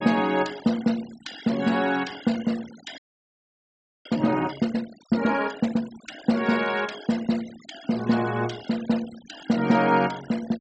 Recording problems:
treble missing; nothing above 8 kHz
denoising artefacts; signal-to-artefact ratio 18 dB
audio freezing; at 3 s for 1 s

